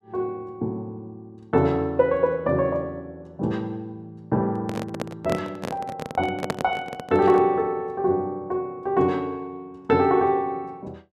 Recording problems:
microphone handling noise; from 4.5 to 7.5 s; peak +2 dB vs average level

